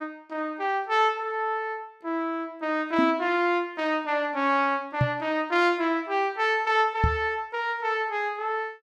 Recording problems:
knock on the microphone; at 3 s, at 5 s and at 7 s; peak +5 dB vs average level

